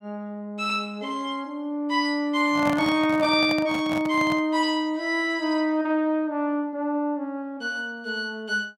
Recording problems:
handling noise; from 2.5 to 4.5 s; peak -3 dB vs average level

